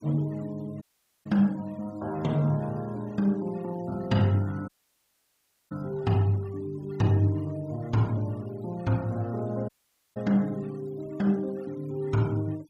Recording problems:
denoising artefacts; signal-to-artefact ratio 27 dB
audio cutting out; at 1 s, at 4.5 s for 1 s and at 9.5 s

